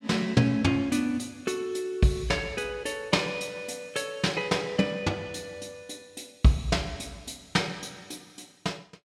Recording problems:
none

